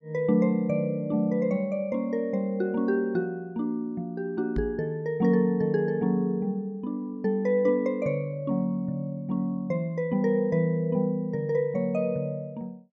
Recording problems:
knock on the microphone; at 4.5 s; peak -1 dB vs average level

